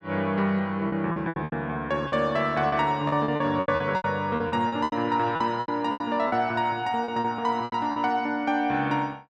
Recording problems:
lost packets; 14% of the sound replaced, filled with repeated pitch periods

